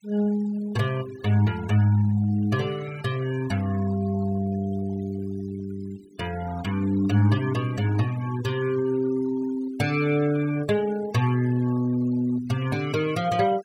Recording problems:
denoising artefacts; signal-to-artefact ratio 19 dB

